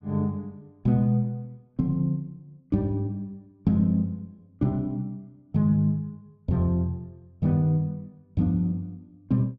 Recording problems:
none

